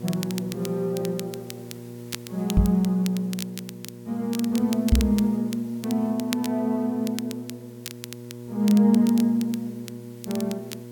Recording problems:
hum; 60 Hz, harmonics up to 960 Hz, SNR 15 dB
background hiss; slope 0 dB per octave, SNR 28 dB
crackling; vinyl, SNR 15 dB
knock on the microphone; at 2.5 s and at 5 s; peak +9 dB vs average level

